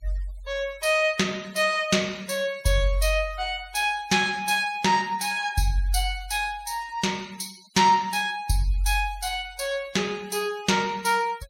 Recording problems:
denoising artefacts; signal-to-artefact ratio 22 dB

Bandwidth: 16 kHz